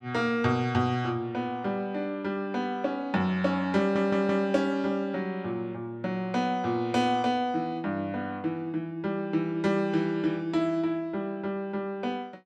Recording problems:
stutter; at 4 s

